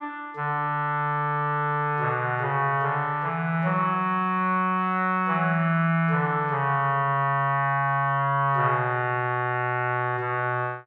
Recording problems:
none

